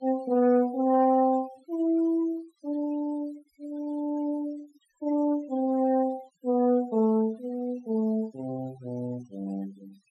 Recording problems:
noise reduction artefacts; signal-to-artefact ratio 23 dB

